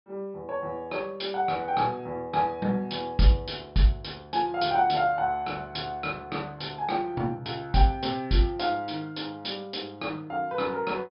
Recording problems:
treble cut off; nothing above 5.5 kHz

